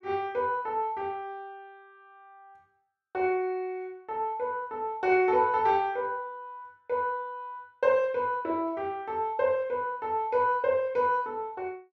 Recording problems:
none

